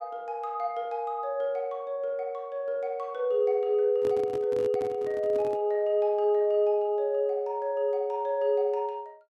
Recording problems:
microphone handling noise; from 4 to 5.5 s; peak -8 dB vs average level

